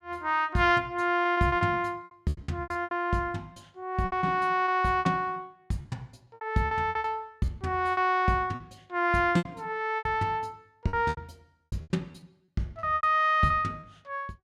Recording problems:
lost packets; 14% of the sound replaced, filled with repeated pitch periods

